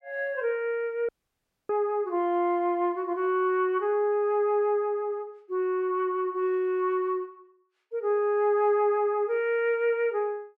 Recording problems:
audio cutting out; at 1 s for 0.5 s

